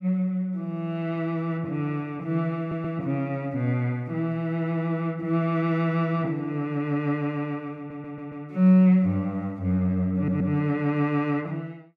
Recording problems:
audio stuttering; at 2.5 s, at 8 s and at 10 s

